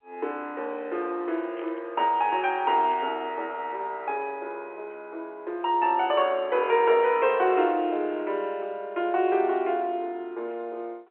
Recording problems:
telephone audio; 280 Hz to 3.3 kHz, G.711
burst of static; at 1.5 s and at 3 s; peak -16 dB vs average level

